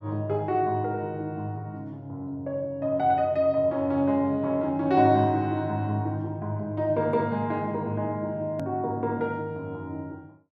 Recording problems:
hard cut with a click; at 8.5 s

